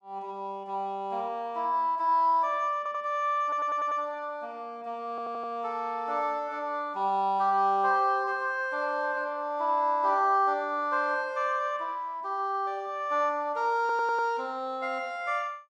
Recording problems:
audio stuttering; 4 times, first at 3 s

